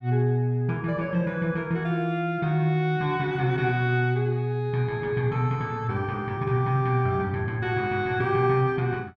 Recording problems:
none

